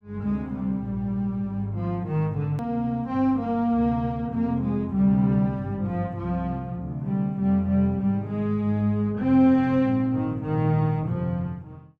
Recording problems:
hard cut with a click; at 2.5 s

